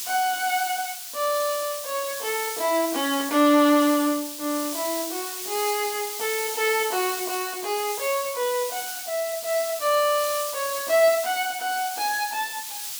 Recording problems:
hiss; slope +5 dB per octave, SNR 6 dB

